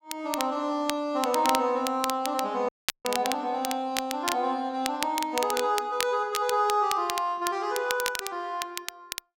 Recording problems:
crackle; vinyl, SNR 7 dB
audio cutting out; at 2.5 s

